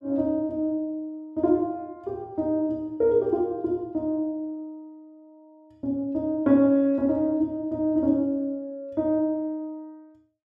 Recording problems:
none

